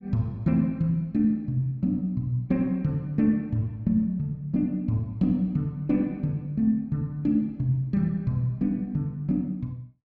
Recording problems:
none

